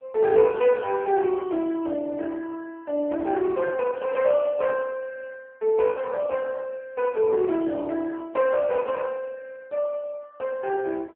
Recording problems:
telephone audio; 110 Hz to 3.5 kHz, AMR-NB

